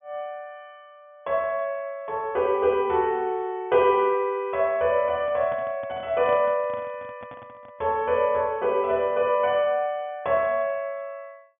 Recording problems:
treble missing; nothing above 3.5 kHz
microphone handling noise; from 5 to 8 s; peak -10 dB vs average level

